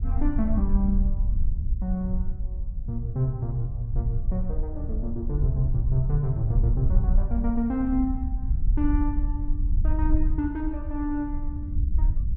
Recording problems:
rumble; below 60 Hz, SNR -1 dB

